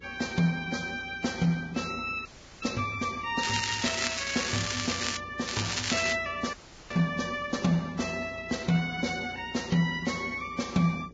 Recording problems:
codec artefacts; Vorbis, log-spectral distance 8 dB, nothing above 7.3 kHz
hum; 60 Hz, harmonics up to 480 Hz, SNR 23 dB
audio freezing; at 2.5 s and at 6.5 s
crackle; from 3.5 to 5 s and at 5.5 s; loose cable, SNR 1 dB

